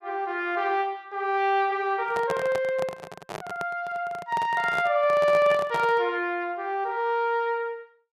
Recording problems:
microphone handling noise; from 2 to 6 s; peak -3 dB vs average level

